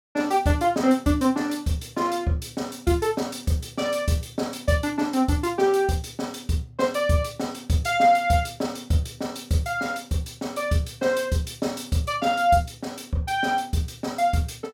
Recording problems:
none

